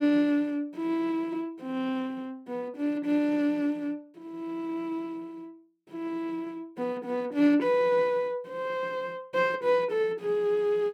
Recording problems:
none

